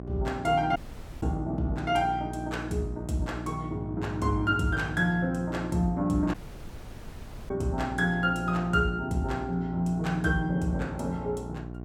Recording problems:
electrical hum; 60 Hz, harmonics up to 1.1 kHz, SNR 10 dB
dropout; at 1 s and at 6.5 s for 1 s

